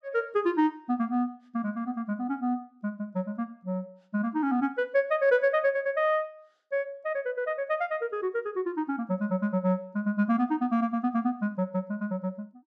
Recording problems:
none

